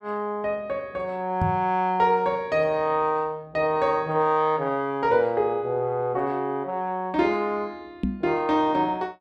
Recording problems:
knock on the microphone; at 1.5 s and at 8 s; peak +2 dB vs average level

